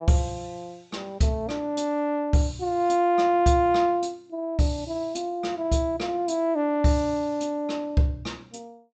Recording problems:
treble missing; nothing above 8 kHz

